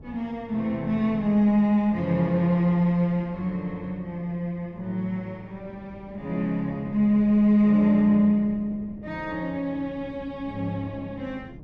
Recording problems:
wind noise; below 260 Hz, SNR 21 dB

